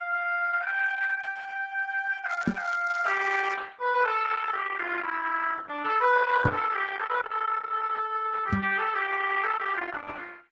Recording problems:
lossy codec; Vorbis, then Opus, log-spectral distance 5 dB, nothing above 7.6 kHz
crackling; from 2.5 to 3.5 s; loose cable, SNR 25 dB
knock on the microphone; at 2.5 s, at 6.5 s and at 8.5 s; peak +6 dB vs average level

